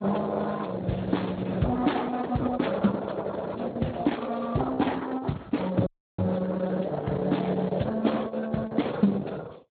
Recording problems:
codec artefacts; Opus, then Speex, log-spectral distance 5 dB, nothing above 4.2 kHz
dropout; at 6 s

